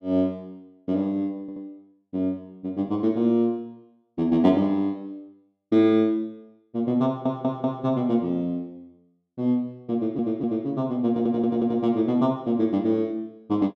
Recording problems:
stutter; 4 times, first at 1.5 s

